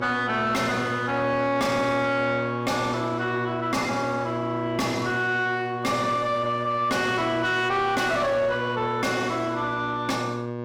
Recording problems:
distorted audio; soft clipping, signal-to-distortion ratio 8 dB
electrical hum; 60 Hz, harmonics up to 2.2 kHz, SNR 7 dB

